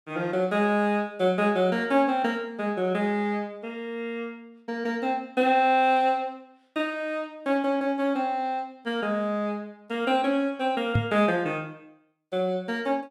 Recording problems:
knock on the microphone; at 11 s; peak +5 dB vs average level

